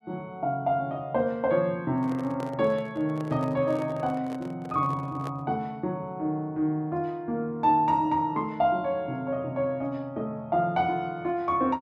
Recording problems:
handling noise; from 2 to 5.5 s; peak -7 dB vs average level

